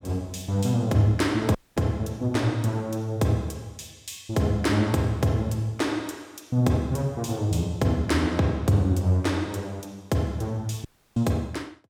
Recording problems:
dropout; at 1.5 s and at 11 s

